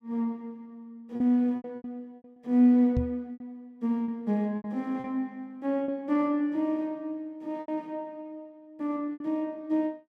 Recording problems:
packet loss; 7% of the sound replaced, filled with repeated pitch periods
knock on the microphone; at 3 s; peak +3 dB vs average level

